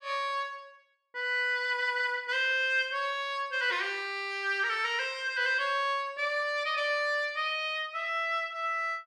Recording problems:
none

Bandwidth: 14.5 kHz